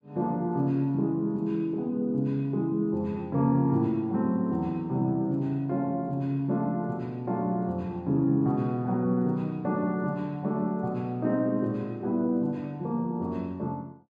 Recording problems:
none

